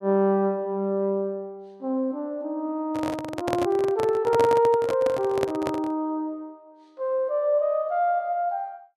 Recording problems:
handling noise; from 3 to 6 s; peak +1 dB vs average level

